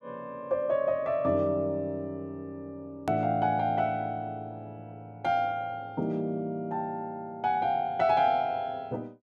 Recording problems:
click at an edit; at 3 s

